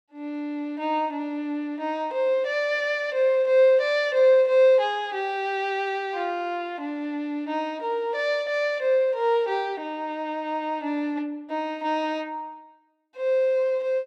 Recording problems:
none

